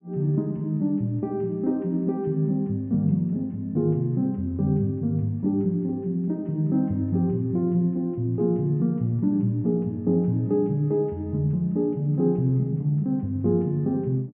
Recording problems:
low-pass filter; nothing above 3.3 kHz

